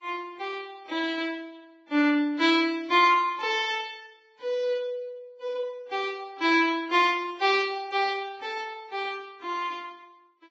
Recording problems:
lossy compression; Vorbis, then AAC, log-spectral distance 2 dB, nothing above 6.3 kHz

